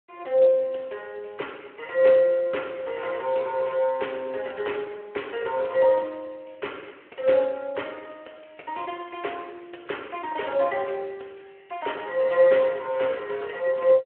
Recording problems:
phone line; 320 Hz to 3.2 kHz, Speex

